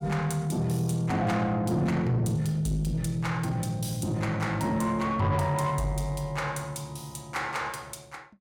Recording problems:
distortion; soft clipping, signal-to-distortion ratio 11 dB

